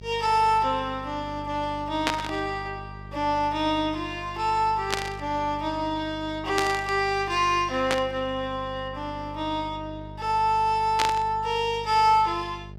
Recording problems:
hum; 50 Hz, harmonics up to 650 Hz, SNR 16 dB
static burst; 5 times, first at 2 s; peak +5 dB vs average level

